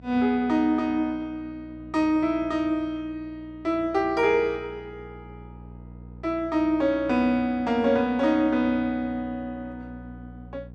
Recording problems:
hum; 60 Hz, harmonics up to 540 Hz, SNR 21 dB

